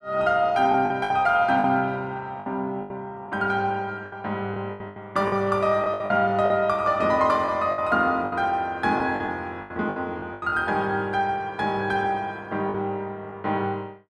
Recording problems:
packet loss; 9% of the sound replaced, filled with the last packet

